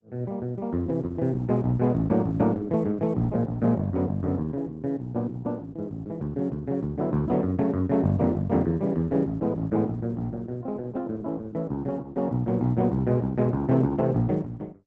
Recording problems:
codec artefacts; Opus, log-spectral distance 2 dB

